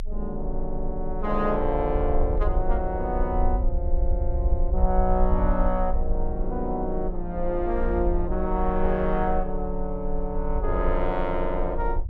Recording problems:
low-frequency rumble; below 50 Hz, strongest tone 22 Hz, SNR 2 dB

